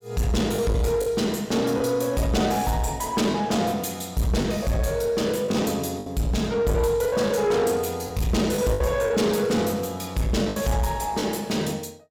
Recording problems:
distortion; soft clipping, signal-to-distortion ratio 11 dB
packet loss; 5% of the sound replaced, filled with the last packet

